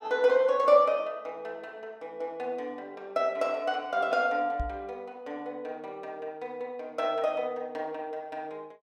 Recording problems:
microphone thump; at 4.5 s; peak -1 dB vs average level

